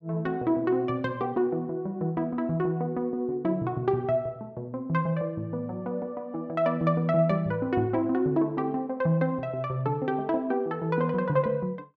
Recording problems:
none

